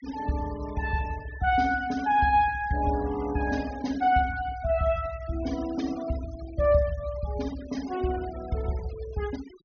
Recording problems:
treble cut off; nothing above 6.6 kHz
noise reduction artefacts; signal-to-artefact ratio 19 dB

